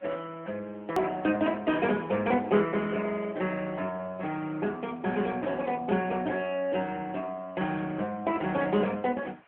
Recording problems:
phone line; 220 Hz to 3.1 kHz, AMR-NB
background hiss; SNR 28 dB
hard cut with a click; at 1 s

